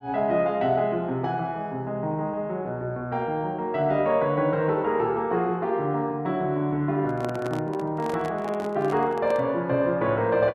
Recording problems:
handling noise; from 7 to 9.5 s; peak -5 dB vs average level

